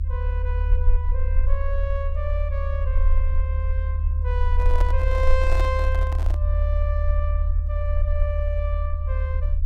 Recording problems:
low-frequency rumble; below 76 Hz, SNR -9 dB
handling noise; from 4.5 to 6.5 s; peak +2 dB vs average level

